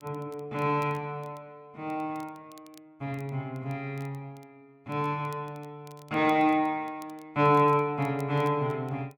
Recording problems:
crackling; vinyl, SNR 30 dB

